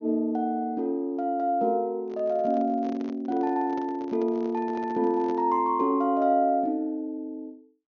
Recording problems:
low-pass filter; nothing above 6.6 kHz
microphone handling noise; from 2 to 5.5 s; peak -9 dB vs average level

